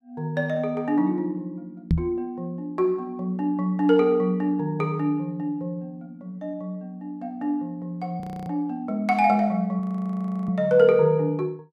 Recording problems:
microphone thump; at 2 s; peak +6 dB vs average level
audio freezing; at 8 s and at 10 s for 0.5 s

